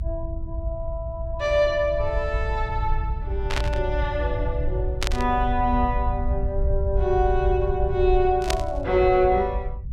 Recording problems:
rumble; below 72 Hz, SNR 4 dB
burst of static; at 3.5 s, at 5 s and at 8.5 s; peak +3 dB vs average level

